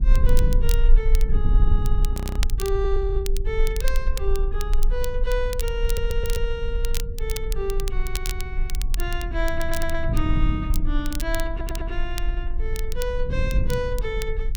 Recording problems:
rumble; below 40 Hz, strongest tone 20 Hz, SNR -3 dB
wind on the microphone; below 130 Hz, SNR 2 dB
crackling; vinyl, SNR 8 dB
frozen audio; at 2 s
audio stuttering; at 6 s, at 9.5 s and at 12 s

